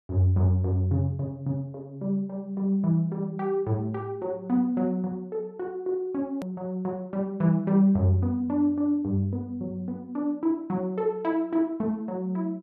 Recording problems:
edit click; at 6.5 s

